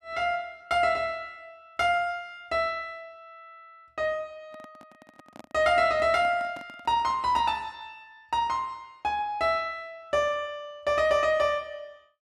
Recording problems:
microphone handling noise; from 4.5 to 7.5 s; peak -11 dB vs average level

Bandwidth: 13.5 kHz